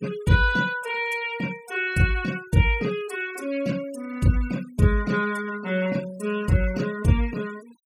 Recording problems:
noise reduction artefacts; signal-to-artefact ratio 20 dB

